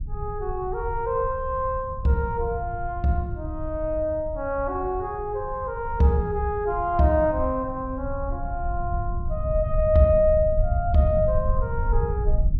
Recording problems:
low-frequency rumble; below 82 Hz, SNR 6 dB

